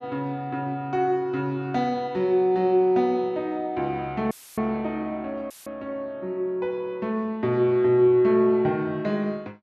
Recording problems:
audio cutting out; at 4.5 s and at 5.5 s; filled with static

